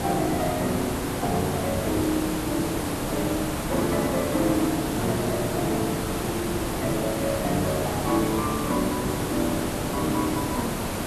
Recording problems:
background hiss; slope -6 dB per octave, SNR 1 dB

